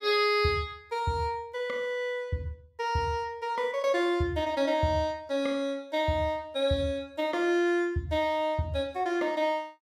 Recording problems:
none

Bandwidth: 16 kHz